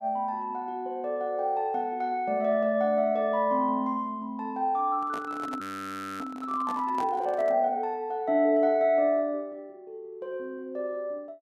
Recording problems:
microphone handling noise; from 5 to 7.5 s; peak -7 dB vs average level
audio freezing; at 5.5 s for 0.5 s

